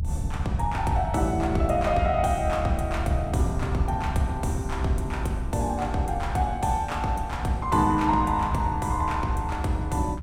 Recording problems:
low-frequency rumble; below 110 Hz, SNR 7 dB

